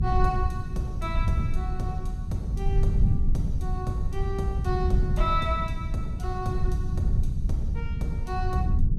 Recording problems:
mains hum; 60 Hz, harmonics up to 420 Hz, SNR 16 dB
low-frequency rumble; below 92 Hz, SNR -3 dB

